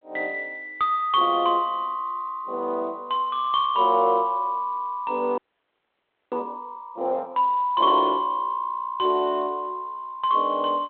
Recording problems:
phone line; 300 Hz to 3.6 kHz, G.726
frozen audio; at 5.5 s for 1 s

